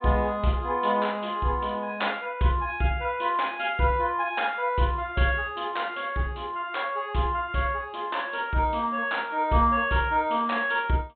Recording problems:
treble cut off; nothing above 4 kHz

